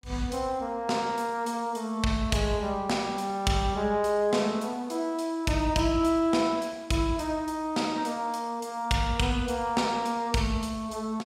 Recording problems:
none

